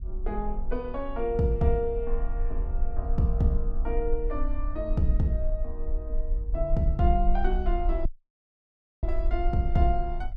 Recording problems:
rumble; below 42 Hz, SNR 3 dB
dropout; at 8 s for 1 s

